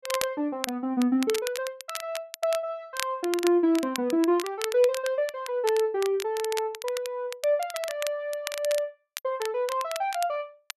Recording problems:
crackle; vinyl, SNR 10 dB

